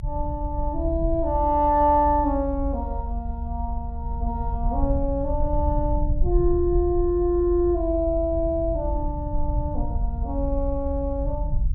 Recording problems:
low-frequency rumble; below 70 Hz, SNR 4 dB

